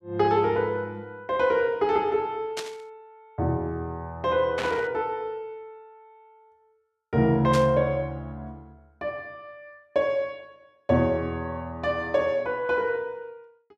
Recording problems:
static burst; at 2.5 s, at 4.5 s and at 7.5 s; peak -2 dB vs average level

